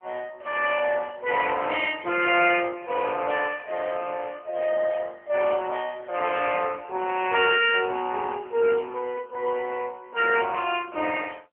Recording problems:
telephone audio; 220 Hz to 2.9 kHz, AMR-NB

